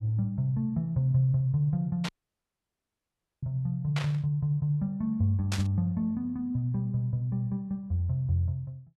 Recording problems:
static burst; at 2 s, at 4 s and at 5.5 s; peak -1 dB vs average level
audio cutting out; at 2 s for 1.5 s

